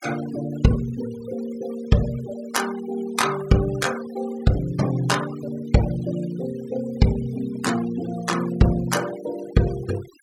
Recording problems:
denoising artefacts; signal-to-artefact ratio 15 dB

